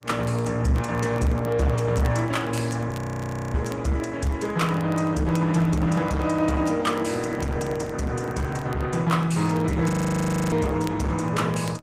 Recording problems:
lossy compression; Opus, log-spectral distance 3 dB, nothing above 15.5 kHz
distorted audio; hard clipping, uneven, signal-to-distortion ratio 10 dB
crackling; vinyl, SNR 24 dB
frozen audio; at 3 s for 0.5 s and at 10 s for 0.5 s

